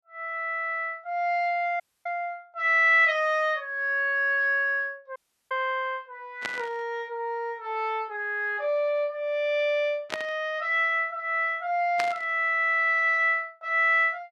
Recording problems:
dropout; at 2 s and at 5 s
burst of static; at 6.5 s, at 10 s and at 12 s; peak -1 dB vs average level

